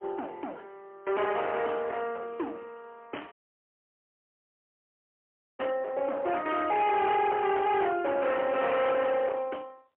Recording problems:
telephone audio; 370 Hz to 3.2 kHz, AMR-NB, then MP3
distortion; hard clipping, signal-to-distortion ratio 8 dB
dropout; at 3.5 s for 2.5 s

